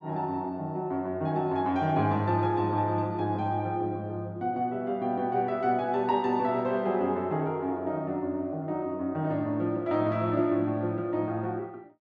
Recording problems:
none

